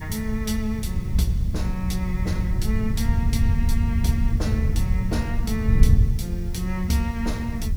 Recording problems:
hiss; slope +1 dB per octave, SNR 23 dB
wind on the microphone; below 100 Hz, SNR -3 dB

